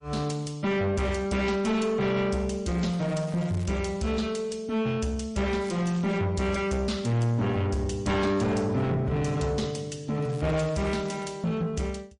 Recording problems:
lossy codec; MP3, log-spectral distance 2 dB, nothing above 9.8 kHz
distortion; soft clipping, signal-to-distortion ratio 8 dB
crackle; at 3 s, at 5.5 s and from 10 to 11 s; loose cable, SNR 21 dB

